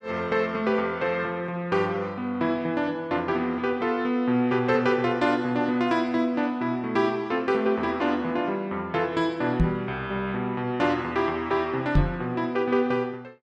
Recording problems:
microphone thump; at 9.5 s and at 12 s; peak +8 dB vs average level

